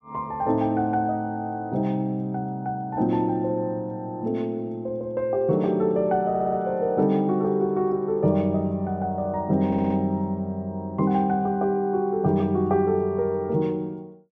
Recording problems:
audio stuttering; at 6.5 s and at 9.5 s

